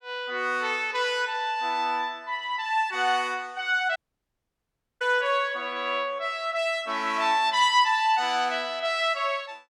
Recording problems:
dropout; at 4 s for 1 s

